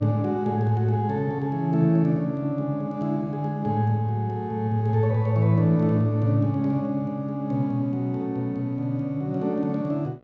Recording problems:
hum; 60 Hz, harmonics up to 2.8 kHz, SNR 31 dB

